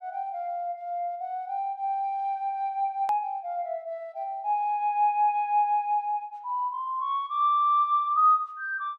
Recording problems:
hard cut with a click; at 3 s

